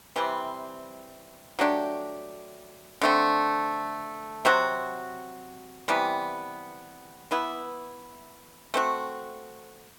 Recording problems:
background hiss; slope -2 dB per octave, SNR 23 dB

